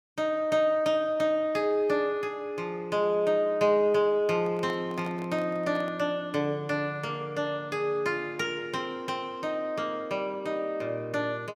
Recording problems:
handling noise; from 4.5 to 6 s; peak -9 dB vs average level

